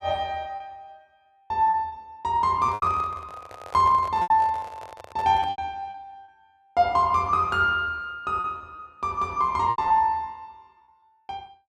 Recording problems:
lost packets; 8% of the sound replaced, filled with repeated pitch periods
handling noise; from 2.5 to 5.5 s; peak -11 dB vs average level

